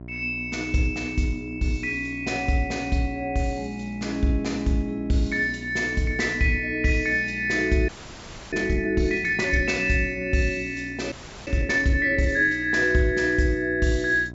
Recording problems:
low-pass filter; nothing above 8 kHz
hum; 60 Hz, harmonics up to 1 kHz, SNR 16 dB
frozen audio; at 8 s for 0.5 s and at 11 s

